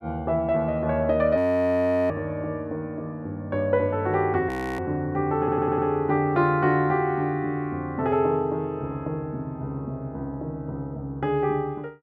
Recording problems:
frozen audio; at 1.5 s for 0.5 s and at 4.5 s
audio stuttering; at 5.5 s

